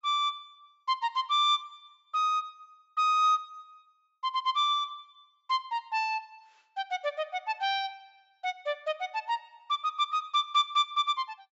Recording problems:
low-pass filter; nothing above 8 kHz

